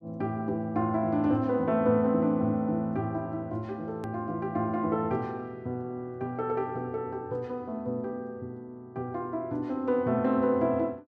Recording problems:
edit click; at 4 s

